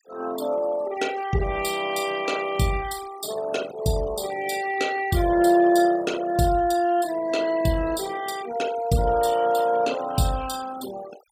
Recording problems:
noise reduction artefacts; signal-to-artefact ratio 16 dB

